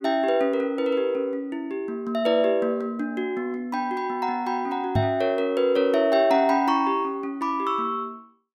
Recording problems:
knock on the microphone; at 5 s; peak +3 dB vs average level

